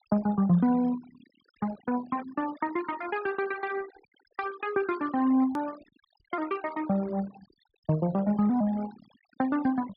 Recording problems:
treble missing; nothing above 5.5 kHz
noise reduction artefacts; signal-to-artefact ratio 17 dB
edit click; at 5.5 s

